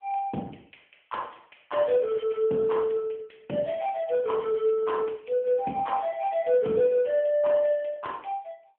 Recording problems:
telephone audio; 170 Hz to 3.3 kHz, AMR-NB

